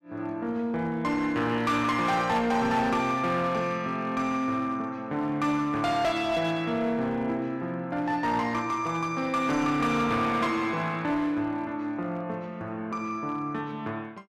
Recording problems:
distorted audio; hard clipping, uneven, signal-to-distortion ratio 11 dB

